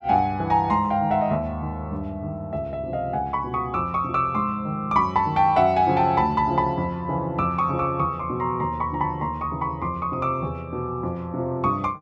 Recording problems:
none

